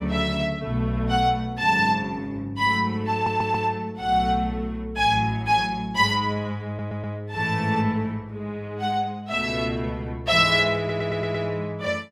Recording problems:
stutter; at 3 s, at 6.5 s and at 11 s

